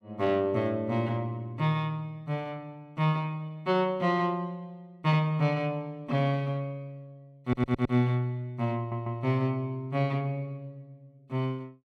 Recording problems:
audio stuttering; at 7.5 s and at 9 s

